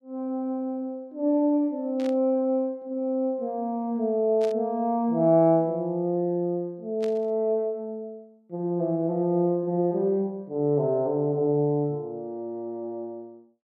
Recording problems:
burst of static; at 2 s, at 4.5 s and at 7 s; peak -12 dB vs average level

